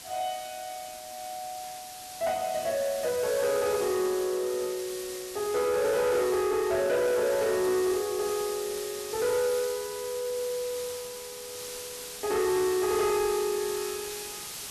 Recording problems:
distortion; soft clipping, signal-to-distortion ratio 12 dB
hiss; slope +1 dB per octave, SNR 10 dB

